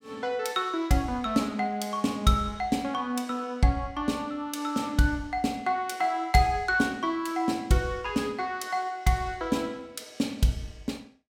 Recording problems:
none

